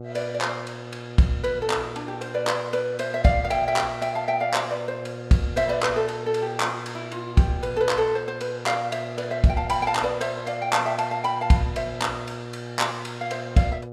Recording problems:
hum; 60 Hz, harmonics up to 840 Hz, SNR 13 dB

